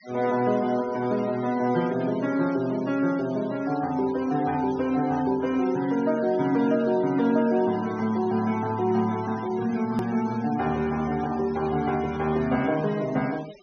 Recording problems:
low-pass filter; nothing above 6.4 kHz
denoising artefacts; signal-to-artefact ratio 18 dB
edit click; at 10 s

